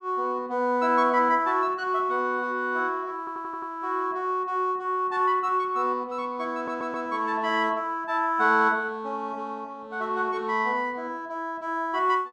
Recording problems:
audio stuttering; at 3 s and at 6.5 s

